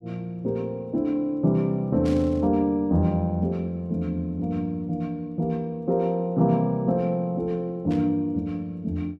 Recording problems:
burst of static; at 2 s and at 8 s; peak -13 dB vs average level

